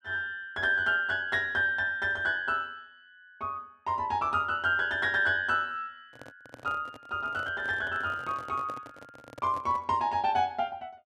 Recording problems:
microphone handling noise; from 6 to 10 s; peak -10 dB vs average level

